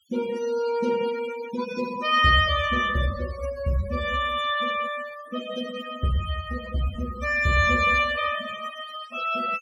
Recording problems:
denoising artefacts; signal-to-artefact ratio 14 dB

